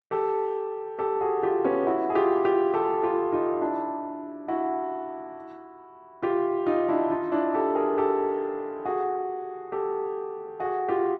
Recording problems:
lossy compression; Opus, log-spectral distance 2 dB

